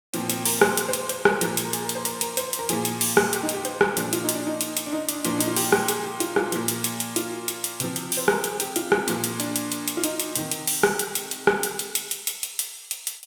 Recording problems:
none

